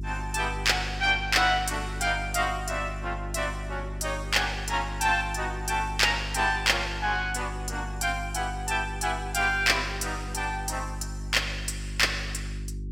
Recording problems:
hum; 50 Hz, harmonics up to 400 Hz, SNR 10 dB

